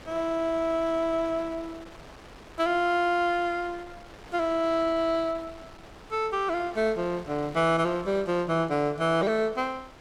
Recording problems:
wind noise; below 1.8 kHz, SNR 20 dB

